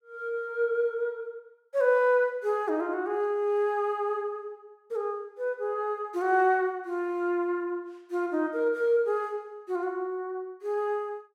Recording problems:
none

